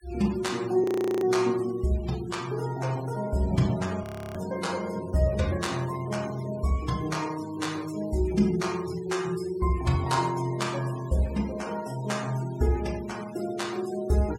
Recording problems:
denoising artefacts; signal-to-artefact ratio 18 dB
audio freezing; at 1 s and at 4 s

